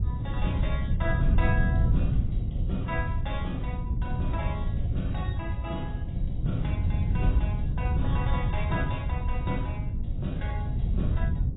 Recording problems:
lossy codec; AAC, log-spectral distance 2 dB, nothing above 3.8 kHz
wind noise; below 120 Hz, SNR -7 dB

